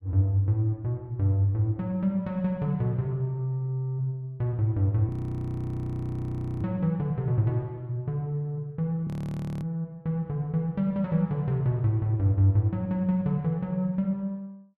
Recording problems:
frozen audio; at 5 s for 1.5 s and at 9 s for 0.5 s

